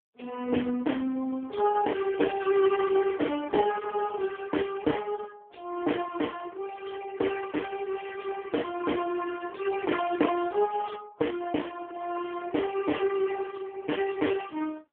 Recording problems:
telephone audio; 260 Hz to 3.3 kHz, AMR-NB

